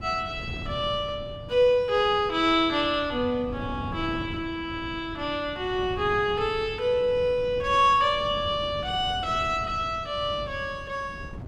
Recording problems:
wind noise; below 230 Hz, SNR 14 dB

